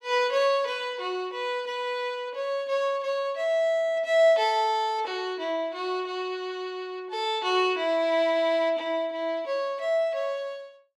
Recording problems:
none

